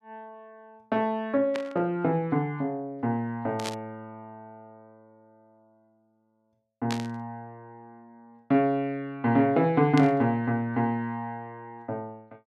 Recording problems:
static burst; 4 times, first at 1.5 s; peak -2 dB vs average level

